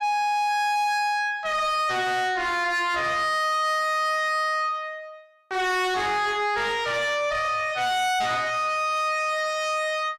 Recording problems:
distortion; soft clipping, signal-to-distortion ratio 7 dB

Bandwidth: 15 kHz